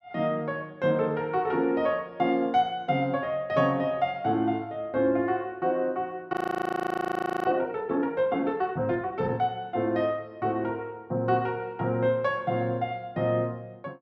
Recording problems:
frozen audio; at 6.5 s for 1 s

